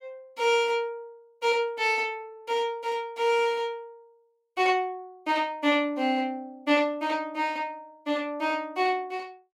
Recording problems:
none

